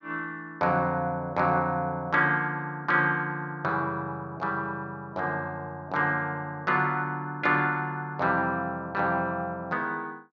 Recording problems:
none

